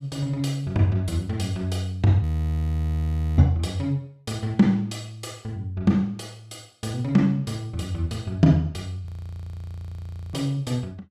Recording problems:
audio freezing; at 2 s for 1 s and at 9 s for 1.5 s

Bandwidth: 14.5 kHz